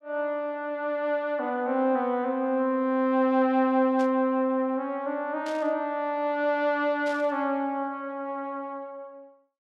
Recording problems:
static burst; at 4 s, at 5.5 s and at 7 s; peak -12 dB vs average level

